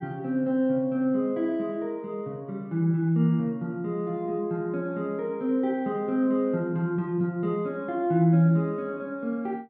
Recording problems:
none

